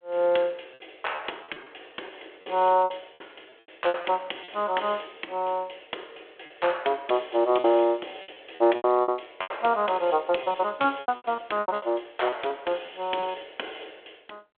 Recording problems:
telephone audio; 300 Hz to 3.4 kHz, G.726
lost packets; 11% of the sound replaced, filled with repeated pitch periods

